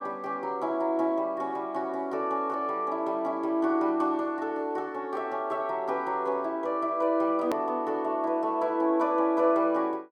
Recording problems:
click at an edit; at 7.5 s

